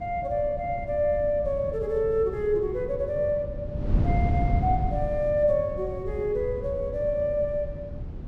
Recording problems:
wind noise; below 150 Hz, SNR 6 dB

